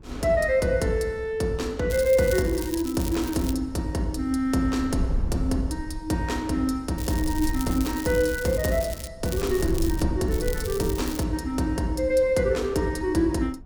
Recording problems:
wind on the microphone; below 80 Hz, SNR 13 dB
crackling; 4 times, first at 2 s; loose cable, SNR 13 dB

